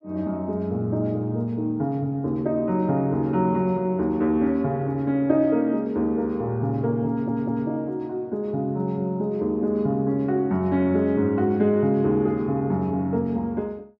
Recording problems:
stutter; at 7 s

